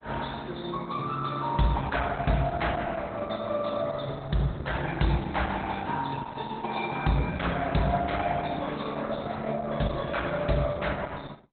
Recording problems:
codec artefacts; Opus, log-spectral distance 5 dB, nothing above 4 kHz

